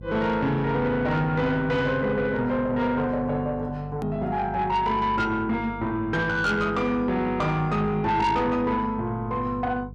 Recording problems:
distorted audio; soft clipping, signal-to-distortion ratio 11 dB
hum; 50 Hz, harmonics up to 450 Hz, SNR 16 dB
edit click; at 4 s

